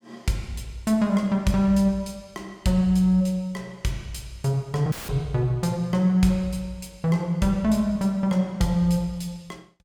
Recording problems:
dropout; at 5 s; filled with static

